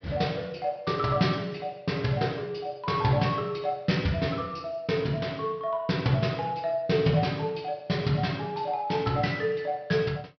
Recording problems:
treble cut off; nothing above 5.5 kHz

